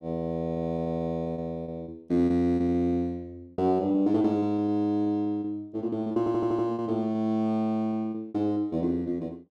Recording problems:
lost packets; 11% of the sound replaced, filled with repeated pitch periods
audio stuttering; at 6 s

